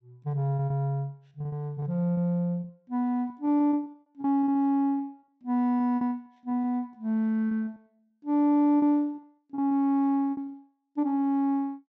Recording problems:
treble missing; nothing above 8 kHz
packet loss; 11% of the sound replaced, filled with repeated pitch periods

